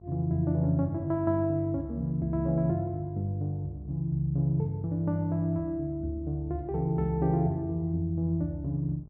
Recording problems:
hum; 50 Hz, harmonics up to 850 Hz, SNR 23 dB

